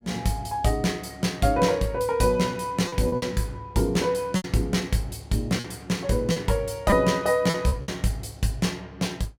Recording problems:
lost packets; 5% of the sound replaced, filled with repeated pitch periods

